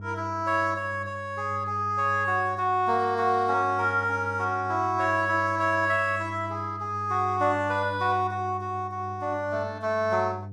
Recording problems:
hum; 50 Hz, harmonics up to 500 Hz, SNR 14 dB

